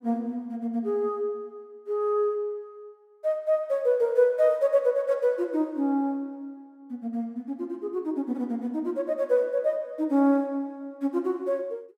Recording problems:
none

